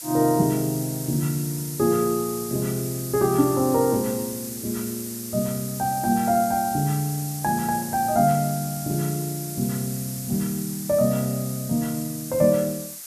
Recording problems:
hiss; SNR 9 dB

